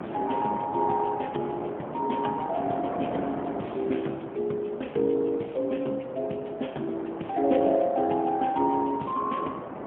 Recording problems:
phone line; 170 Hz to 3.4 kHz, AMR-NB, then MP3
wind noise; below 830 Hz, SNR 8 dB

